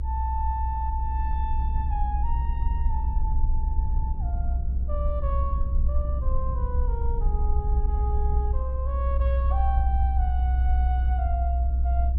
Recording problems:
hum; 60 Hz, harmonics up to 540 Hz, SNR 22 dB
low-frequency rumble; below 64 Hz, strongest tone 62 Hz, SNR -9 dB

